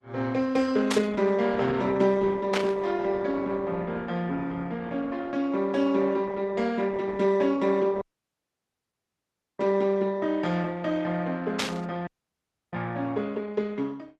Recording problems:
codec artefacts; Opus, log-spectral distance 3 dB, nothing above 11.6 kHz
burst of static; at 1 s, at 2.5 s and at 12 s; peak +3 dB vs average level
audio cutting out; at 8 s for 1.5 s and at 12 s for 0.5 s

